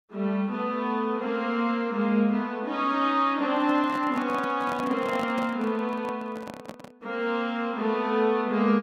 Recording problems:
handling noise; from 3.5 to 7 s; peak -5 dB vs average level

